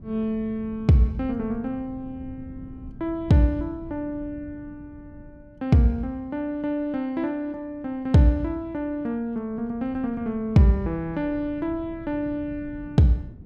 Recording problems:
wind on the microphone; below 170 Hz, SNR 19 dB

